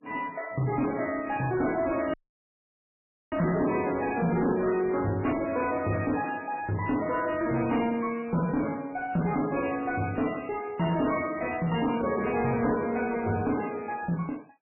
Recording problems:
lossy codec; MP3, log-spectral distance 5 dB, nothing above 2.5 kHz
distortion; soft clipping, signal-to-distortion ratio 10 dB
audio cutting out; at 2 s for 1 s

